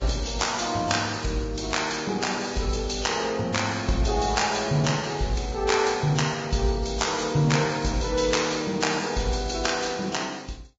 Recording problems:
lossy codec; Vorbis, log-spectral distance 7 dB, nothing above 7.3 kHz

